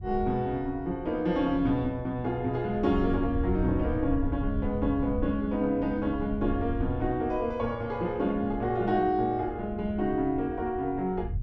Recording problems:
low-frequency rumble; below 94 Hz, SNR 10 dB

